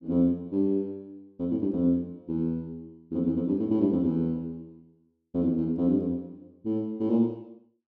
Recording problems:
none

